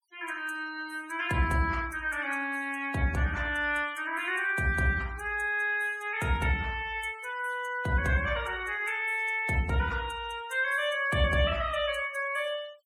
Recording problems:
denoising artefacts; signal-to-artefact ratio 22 dB

